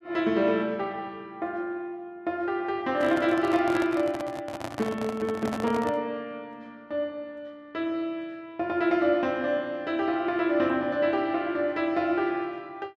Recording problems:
handling noise; from 3 to 6 s; peak -2 dB vs average level

